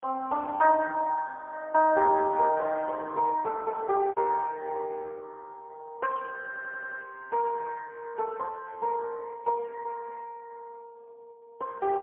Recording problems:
phone line; 320 Hz to 2.6 kHz, AMR-NB, then MP3
lost packets; 1% of the sound replaced, filled with repeated pitch periods
audio stuttering; at 6.5 s

